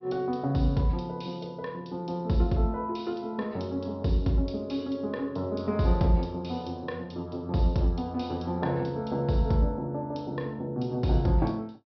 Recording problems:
treble cut off; nothing above 5.5 kHz

